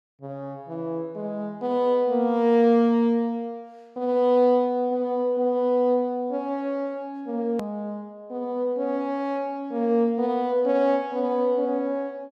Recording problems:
hard cut with a click; at 7.5 s

